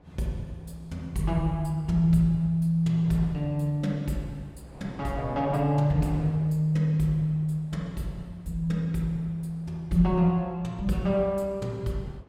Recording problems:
wind noise; below 660 Hz, SNR 23 dB

